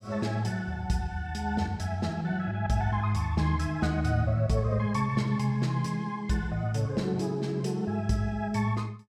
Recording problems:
none

